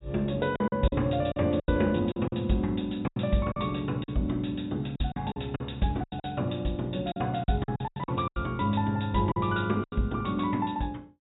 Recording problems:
treble cut off; nothing above 4 kHz
packet loss; 11% of the sound replaced, filled with silence

